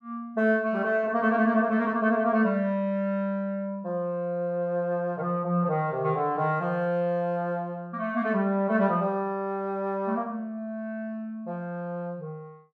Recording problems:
none

